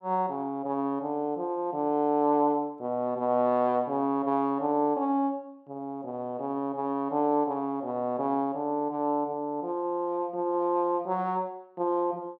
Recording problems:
none

